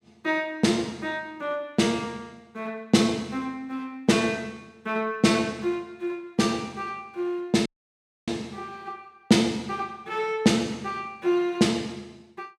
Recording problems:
audio cutting out; at 7.5 s for 0.5 s

